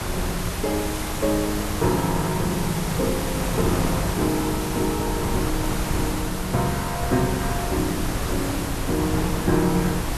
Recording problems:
hiss; slope -1 dB per octave, SNR 6 dB
wind on the microphone; below 540 Hz, SNR 4 dB

